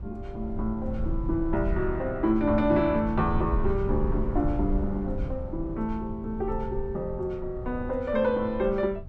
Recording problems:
low-frequency rumble; below 86 Hz, SNR 6 dB

